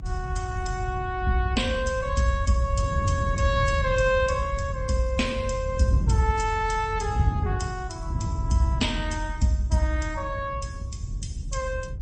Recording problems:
lossy compression; MP3, then Opus, log-spectral distance 2 dB, nothing above 8.2 kHz
rumble; below 86 Hz, strongest tone 42 Hz, SNR 7 dB
wind noise; below 130 Hz, SNR 6 dB

